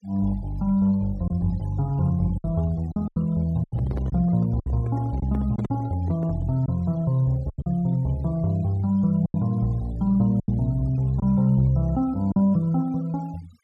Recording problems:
noise reduction artefacts; signal-to-artefact ratio 27 dB
lost packets; 6% of the sound replaced, filled with silence
handling noise; from 3.5 to 6.5 s; peak -8 dB vs average level

